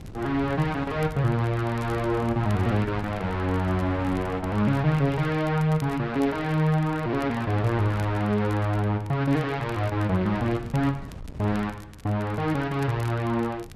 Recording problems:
wind on the microphone; below 200 Hz, SNR 17 dB
crackling; vinyl, SNR 26 dB

